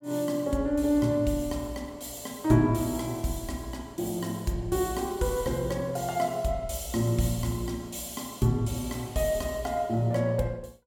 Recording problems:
none

